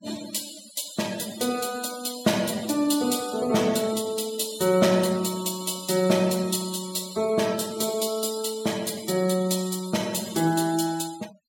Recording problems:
noise reduction artefacts; signal-to-artefact ratio 16 dB

